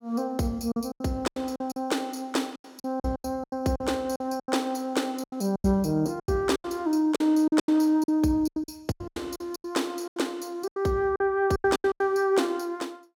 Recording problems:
packet loss; 16% of the sound replaced, filled with silence

